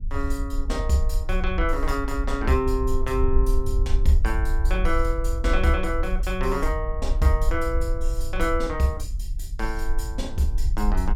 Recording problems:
rumble; below 52 Hz, SNR 1 dB

